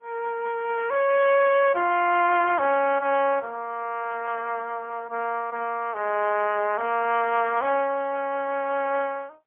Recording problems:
telephone audio; 300 Hz to 3.1 kHz, AMR-NB, then MP3

